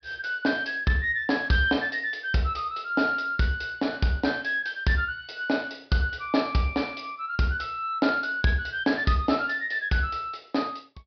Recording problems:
treble cut off; nothing above 5.5 kHz

